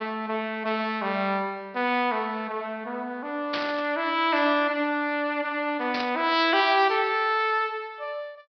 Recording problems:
low-pass filter; nothing above 5.5 kHz
burst of static; at 3.5 s and at 6 s; peak -1 dB vs average level

